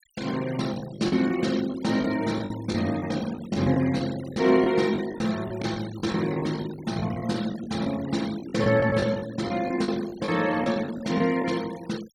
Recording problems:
denoising artefacts; signal-to-artefact ratio 17 dB
packet loss; 11% of the sound replaced, filled with the last packet

